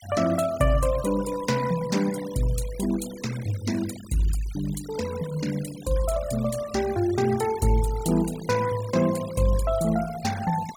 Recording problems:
noise reduction artefacts; signal-to-artefact ratio 16 dB

